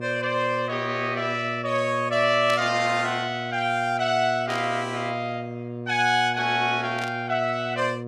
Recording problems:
electrical hum; 60 Hz, harmonics up to 1.2 kHz, SNR 11 dB
burst of static; at 2.5 s, at 4.5 s and at 7 s; peak -6 dB vs average level

